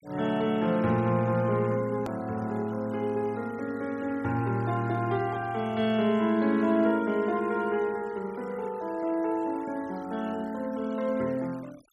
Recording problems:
noise reduction artefacts; signal-to-artefact ratio 24 dB
hard cut with a click; at 2 s

